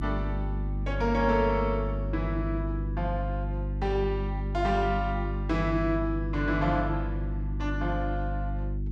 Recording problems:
hum; 50 Hz, harmonics up to 350 Hz, SNR 2 dB

